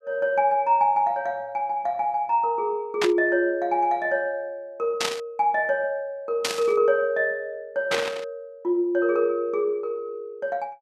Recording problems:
burst of static; 4 times, first at 3 s; peak +4 dB vs average level

